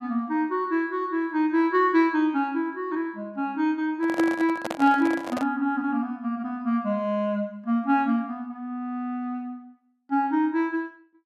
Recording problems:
microphone handling noise; from 4 to 5.5 s; peak -1 dB vs average level

